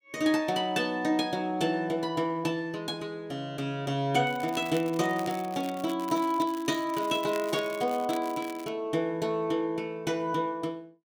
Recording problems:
crackle; from 4.5 to 8.5 s; loose cable, SNR 17 dB

